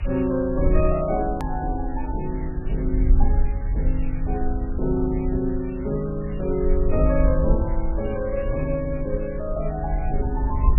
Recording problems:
lossy codec; MP3, log-spectral distance 9 dB, nothing above 13.1 kHz
background hiss; SNR 20 dB
low-frequency rumble; below 58 Hz, SNR 1 dB
edit click; at 1.5 s

